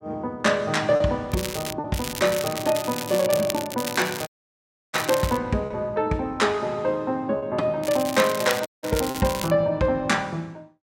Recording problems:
packet loss; 2% of the sound replaced, filled with repeated pitch periods
crackling; at 1.5 s, from 2 to 5.5 s and from 8 to 9.5 s; loose cable, SNR 9 dB
dropout; at 4.5 s for 0.5 s and at 8.5 s

